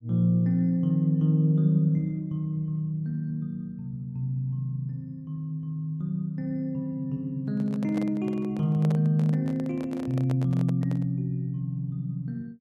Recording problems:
microphone handling noise; from 7.5 to 11 s; peak -7 dB vs average level

